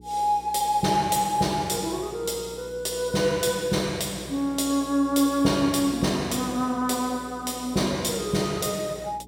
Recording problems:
hum; 60 Hz, harmonics up to 420 Hz, SNR 21 dB

